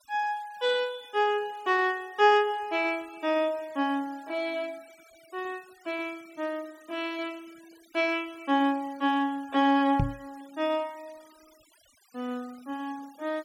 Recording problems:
denoising artefacts; signal-to-artefact ratio 26 dB
microphone bump; at 10 s; peak +5 dB vs average level

